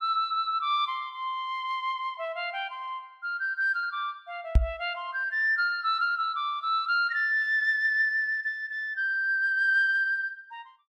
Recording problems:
microphone bump; at 4.5 s; peak +9 dB vs average level

